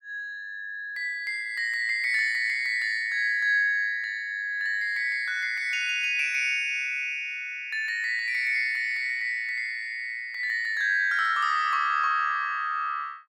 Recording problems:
none

